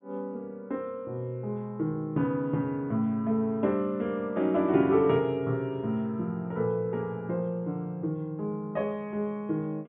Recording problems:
low-pass filter; nothing above 3.7 kHz

